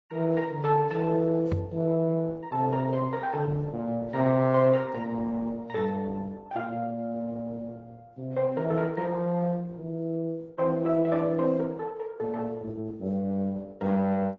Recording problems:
codec artefacts; Opus, then AAC, log-spectral distance 2 dB
microphone thump; at 1.5 s; peak +3 dB vs average level

